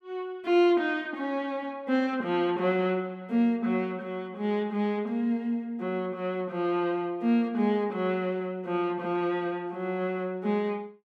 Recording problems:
none

